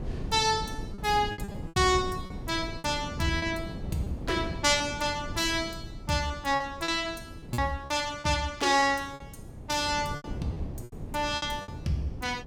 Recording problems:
wind noise; below 240 Hz, SNR 11 dB
packet loss; 8% of the sound replaced, filled with repeated pitch periods

